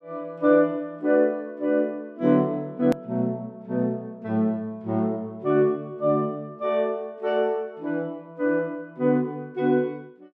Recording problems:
hard cut with a click; at 3 s

